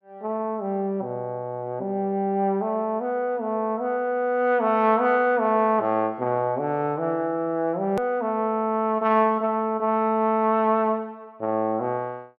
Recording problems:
click at an edit; at 8 s

